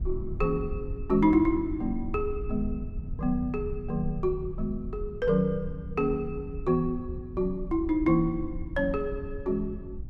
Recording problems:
low-frequency rumble; below 78 Hz, SNR 10 dB

